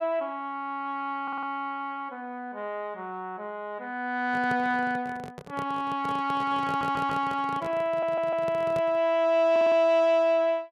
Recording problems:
audio stuttering; 4 times, first at 1 s
handling noise; from 4.5 to 9 s; peak -6 dB vs average level

